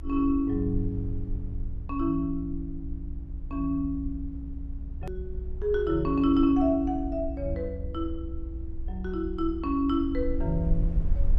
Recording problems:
low-frequency rumble; below 60 Hz, SNR 8 dB
hard cut with a click; at 5 s

